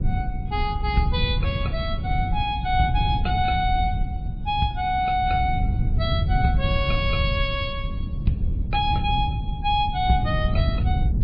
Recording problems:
lossy codec; MP3, log-spectral distance 2 dB
low-frequency rumble; below 120 Hz, SNR 1 dB

